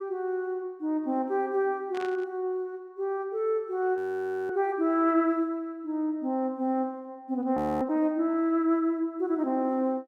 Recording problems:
static burst; at 2 s; peak -10 dB vs average level
frozen audio; at 4 s for 0.5 s and at 7.5 s

